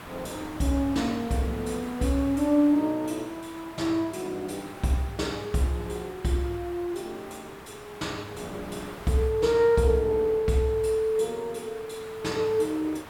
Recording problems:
background hiss; SNR 17 dB
wind on the microphone; below 700 Hz, SNR 24 dB

